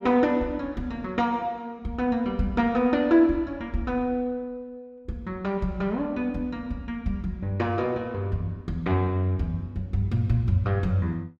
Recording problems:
none

